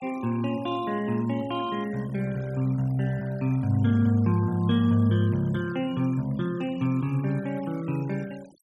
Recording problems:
noise reduction artefacts; signal-to-artefact ratio 24 dB

